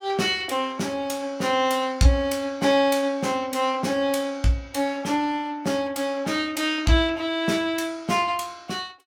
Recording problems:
none

